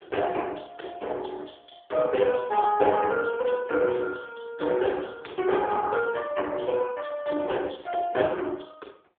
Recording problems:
telephone audio; 300 Hz to 3.4 kHz, AMR-NB

